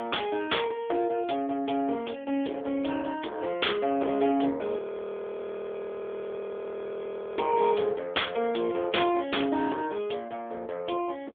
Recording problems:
phone line; 240 Hz to 3.5 kHz, AMR-NB
distortion; soft clipping, signal-to-distortion ratio 12 dB
audio freezing; at 5 s for 2.5 s

